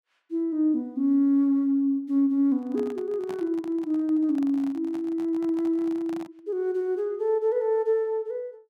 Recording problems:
handling noise; from 2.5 to 6.5 s; peak -11 dB vs average level

